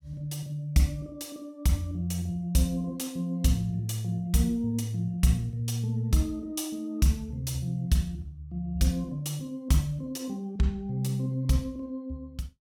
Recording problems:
none

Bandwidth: 17.5 kHz